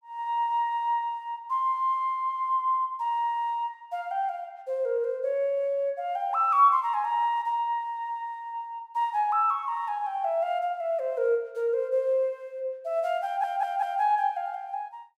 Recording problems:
stutter; at 13 s

